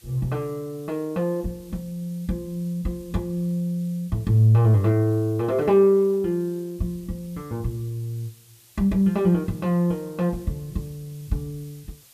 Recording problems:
background hiss; slope +2 dB per octave, SNR 27 dB

